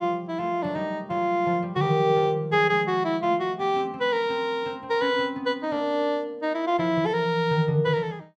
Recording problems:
none

